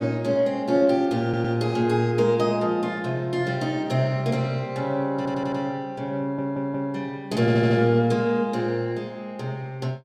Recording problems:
audio stuttering; 4 times, first at 1 s

